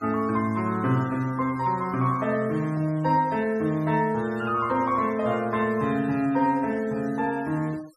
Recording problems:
noise reduction artefacts; signal-to-artefact ratio 24 dB

